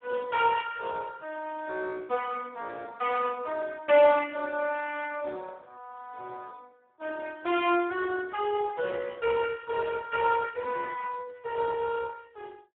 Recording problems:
phone line; 300 Hz to 2.3 kHz, Speex

